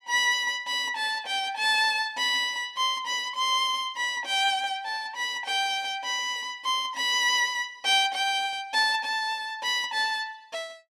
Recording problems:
none

